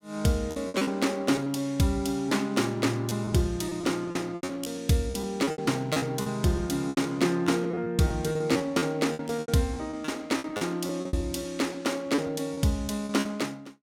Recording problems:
lost packets; 14% of the sound replaced, filled with repeated pitch periods

